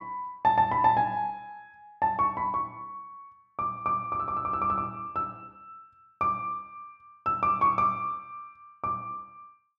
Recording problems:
none

